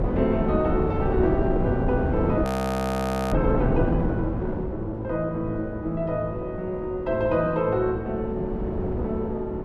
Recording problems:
wind on the microphone; below 390 Hz, SNR 2 dB
frozen audio; at 2.5 s for 1 s

